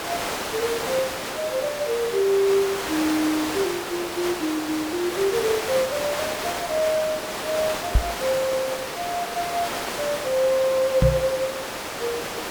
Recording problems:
background hiss; SNR 4 dB
microphone bump; at 8 s and at 11 s; peak +8 dB vs average level

